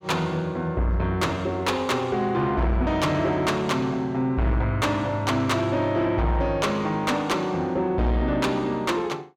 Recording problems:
distorted audio; soft clipping, signal-to-distortion ratio 10 dB

